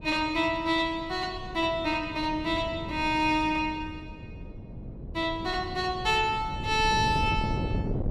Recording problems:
wind on the microphone; below 250 Hz, SNR 10 dB

